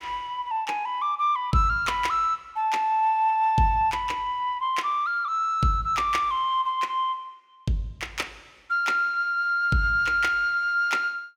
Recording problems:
none

